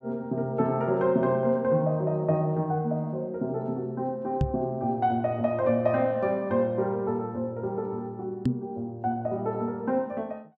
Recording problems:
microphone bump; at 4.5 s and at 8.5 s; peak +6 dB vs average level

